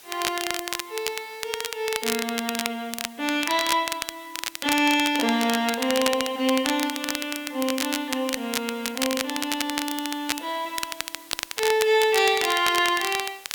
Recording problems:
hiss; slope +1 dB per octave, SNR 21 dB
crackling; vinyl, SNR 5 dB

